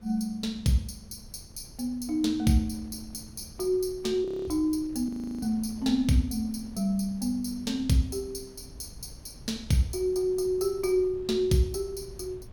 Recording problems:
wind noise; below 170 Hz, SNR 20 dB
audio freezing; at 4.5 s and at 5 s

